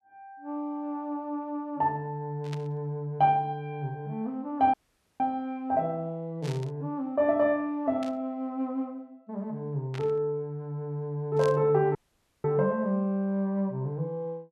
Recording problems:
static burst; 5 times, first at 2.5 s; peak -8 dB vs average level
dropout; at 4.5 s and at 12 s

